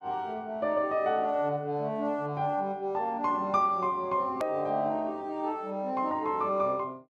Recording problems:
click at an edit; at 4.5 s

